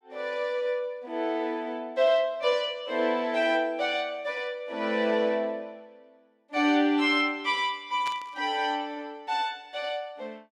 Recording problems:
static burst; at 8 s; peak -7 dB vs average level

